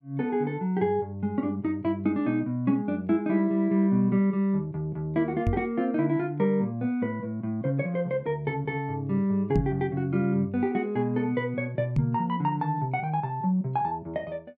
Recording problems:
knock on the microphone; at 5.5 s, at 9.5 s and at 12 s; peak +6 dB vs average level

